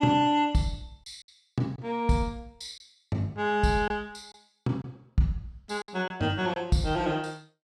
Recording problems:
lost packets; 3% of the sound replaced, filled with silence

